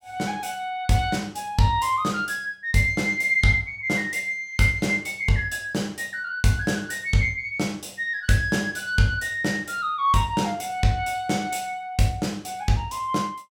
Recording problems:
none

